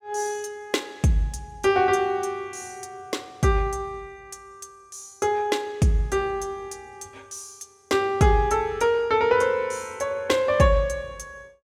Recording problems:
none

